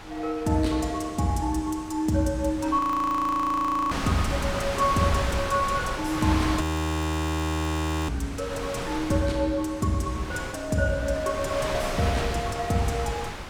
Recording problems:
wind on the microphone; below 2.4 kHz, SNR 6 dB
frozen audio; at 3 s for 1 s and at 6.5 s for 1.5 s

